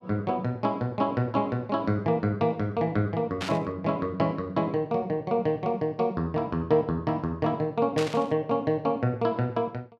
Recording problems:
burst of static; at 3.5 s and at 8 s; peak -2 dB vs average level

